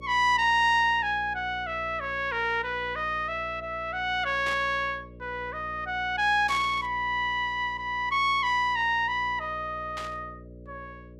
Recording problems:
hum; 60 Hz, harmonics up to 600 Hz, SNR 20 dB
burst of static; at 4.5 s, at 6.5 s and at 10 s; peak -8 dB vs average level

